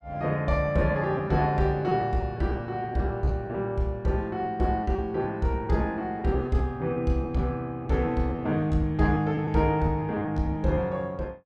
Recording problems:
lost packets; 7% of the sound replaced, filled with repeated pitch periods

